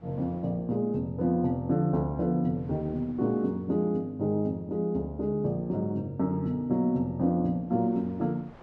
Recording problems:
wind on the microphone; below 920 Hz, SNR 28 dB

